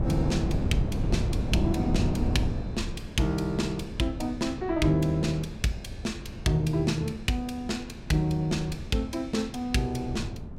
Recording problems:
wind noise; below 200 Hz, SNR 5 dB

